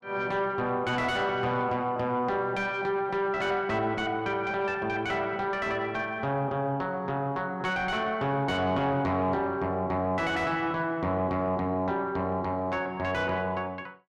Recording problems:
distorted audio; soft clipping, signal-to-distortion ratio 10 dB

